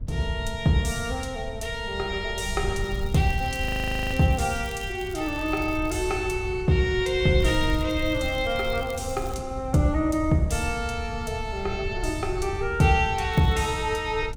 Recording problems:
wind on the microphone; below 96 Hz, SNR 9 dB
crackling; from 3 to 6 s, from 7.5 to 9.5 s and at 13 s; loose cable, SNR 22 dB
audio freezing; at 3.5 s

